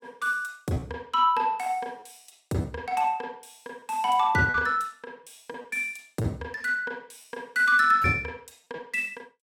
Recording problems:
packet loss; 4% of the sound replaced, filled with repeated pitch periods

